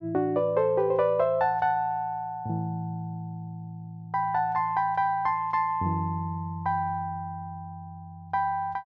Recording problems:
none

